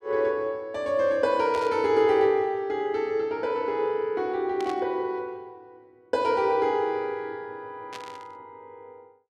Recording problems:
burst of static; at 1.5 s, at 4.5 s and at 8 s; peak -10 dB vs average level

